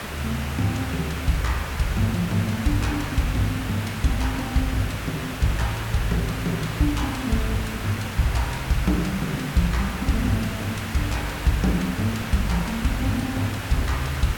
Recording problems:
hiss; SNR 6 dB

